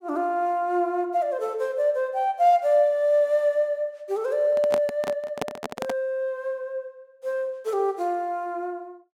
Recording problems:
microphone handling noise; from 4.5 to 6 s; peak 0 dB vs average level

